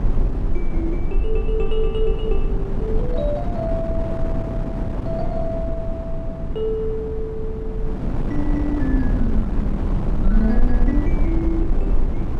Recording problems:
hum; 50 Hz, harmonics up to 300 Hz, SNR 17 dB
low-frequency rumble; below 40 Hz, strongest tone 18 Hz, SNR 0 dB
wind on the microphone; below 290 Hz, SNR 0 dB

